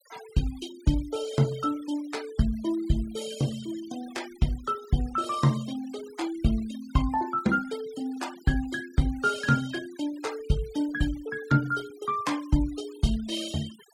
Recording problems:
noise reduction artefacts; signal-to-artefact ratio 18 dB

